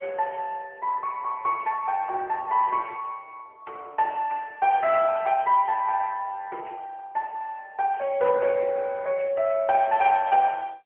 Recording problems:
telephone audio; 320 Hz to 3.1 kHz, AMR-NB

